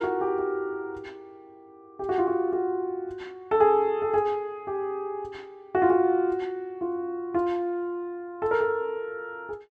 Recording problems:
none

